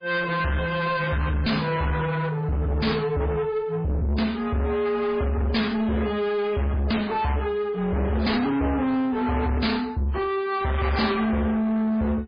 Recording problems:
lossy compression; AAC, then MP3, log-spectral distance 3 dB, nothing above 4.2 kHz
distortion; soft clipping, signal-to-distortion ratio 7 dB

